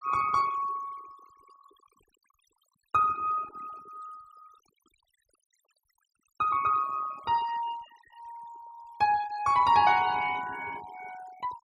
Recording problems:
denoising artefacts; signal-to-artefact ratio 22 dB

